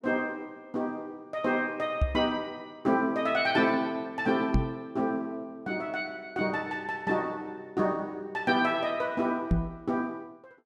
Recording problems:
microphone thump; at 2 s, at 4.5 s and at 9.5 s; peak +7 dB vs average level

